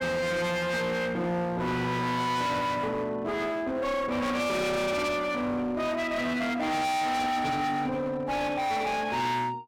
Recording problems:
distorted audio; hard clipping, signal-to-distortion ratio 6 dB

